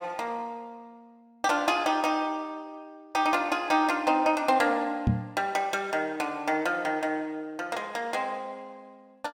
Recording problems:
microphone thump; at 5 s; peak +6 dB vs average level

